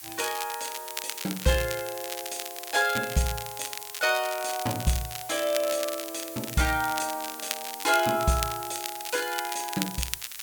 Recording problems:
background hiss; slope +2 dB per octave, SNR 11 dB
crackling; vinyl, SNR 7 dB

